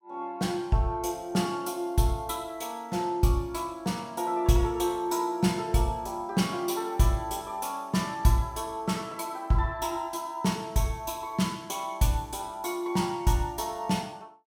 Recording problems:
none

